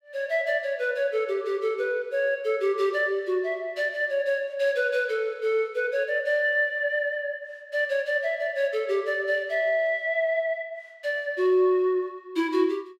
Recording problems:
none

